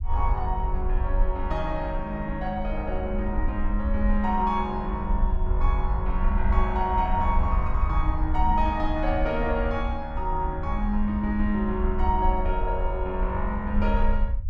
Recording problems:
rumble; below 60 Hz, SNR 1 dB

